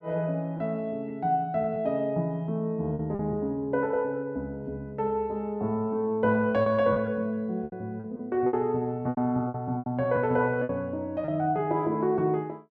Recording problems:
lost packets; 6% of the sound replaced, filled with repeated pitch periods

